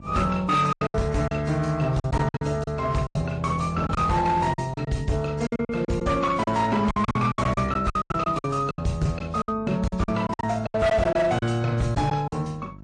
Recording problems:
lossy compression; MP3, then AAC, log-spectral distance 2 dB, nothing above 9.8 kHz
distorted audio; hard clipping, signal-to-distortion ratio 12 dB
electrical hum; 50 Hz, harmonics up to 950 Hz, SNR 20 dB
packet loss; 14% of the sound replaced, filled with silence

